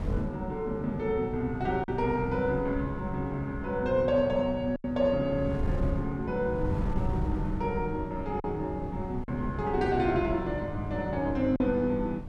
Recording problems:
wind noise; below 150 Hz, SNR 8 dB
packet loss; 2% of the sound replaced, filled with silence

